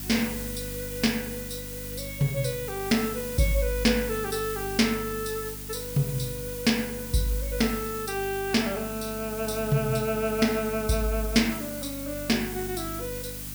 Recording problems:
hum; 50 Hz, harmonics up to 300 Hz, SNR 13 dB
background hiss; slope +1 dB per octave, SNR 8 dB

